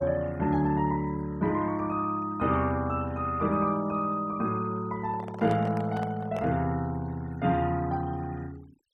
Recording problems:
noise reduction artefacts; signal-to-artefact ratio 24 dB
handling noise; from 5 to 6.5 s; peak -6 dB vs average level

